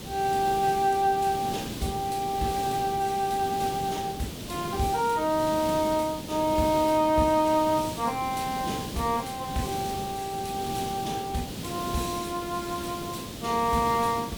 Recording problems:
hiss; SNR 9 dB

